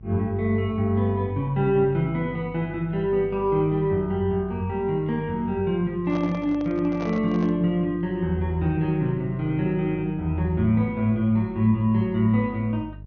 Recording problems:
treble missing; nothing above 6.4 kHz
electrical hum; 50 Hz, harmonics up to 400 Hz, SNR 19 dB
handling noise; from 6 to 7.5 s; peak -8 dB vs average level

